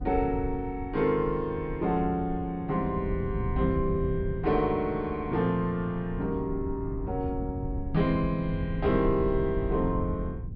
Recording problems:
low-pass filter; nothing above 5.5 kHz
wind noise; below 120 Hz, SNR 7 dB

